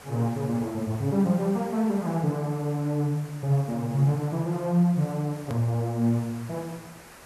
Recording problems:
background hiss; SNR 20 dB
click at an edit; at 5.5 s

